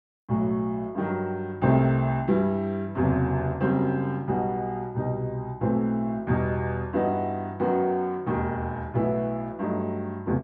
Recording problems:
none

